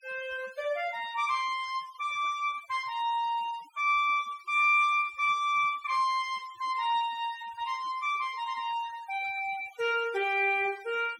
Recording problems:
noise reduction artefacts; signal-to-artefact ratio 24 dB

